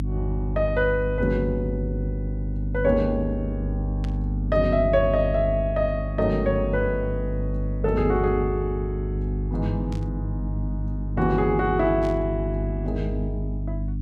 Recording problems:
hum; 50 Hz, harmonics up to 300 Hz, SNR 3 dB
static burst; at 4 s, at 10 s and at 12 s; peak -13 dB vs average level

